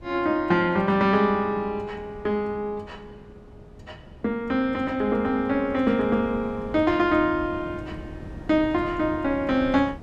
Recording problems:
wind on the microphone; below 310 Hz, SNR 18 dB

